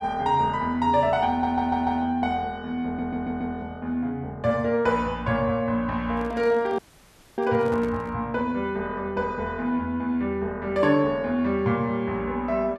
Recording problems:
stutter; at 1.5 s and at 3 s
handling noise; from 6 to 8 s; peak -9 dB vs average level
dropout; at 7 s for 0.5 s

